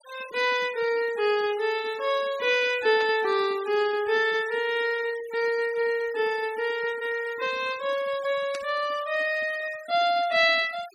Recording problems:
denoising artefacts; signal-to-artefact ratio 19 dB
burst of static; at 3 s and at 8.5 s; peak -9 dB vs average level

